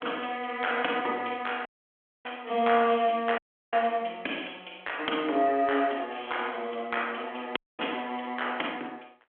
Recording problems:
telephone audio; 240 Hz to 3.4 kHz, G.726
dropout; at 1.5 s for 0.5 s, at 3.5 s and at 7.5 s

